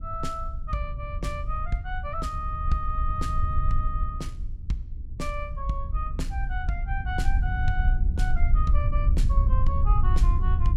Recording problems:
low-frequency rumble; below 66 Hz, SNR -5 dB

